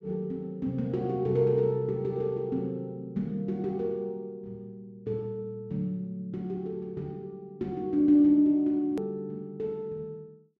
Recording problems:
treble cut off; nothing above 7.7 kHz
hard cut with a click; at 9 s

